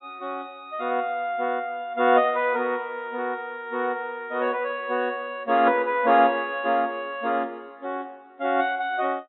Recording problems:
treble cut off; nothing above 3.8 kHz

